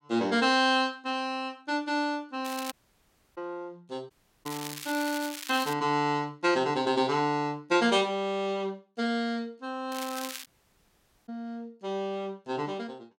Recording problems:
crackle; at 2.5 s, from 4.5 to 5.5 s and at 10 s; loose cable, SNR 11 dB
dropout; at 2.5 s for 0.5 s, at 4 s and at 10 s for 1 s

